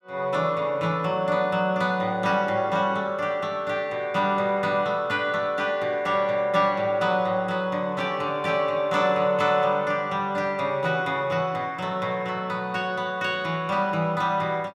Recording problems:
none

